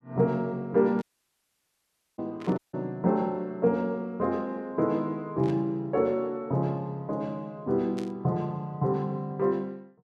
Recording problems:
static burst; 4 times, first at 1 s; peak -12 dB vs average level
audio cutting out; at 1 s for 1 s and at 2.5 s

